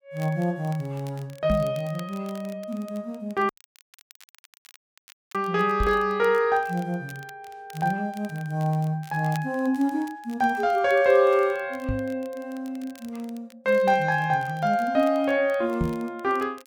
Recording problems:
crackle; vinyl, SNR 26 dB
microphone thump; 4 times, first at 1.5 s; peak +2 dB vs average level
audio cutting out; at 3.5 s for 2 s

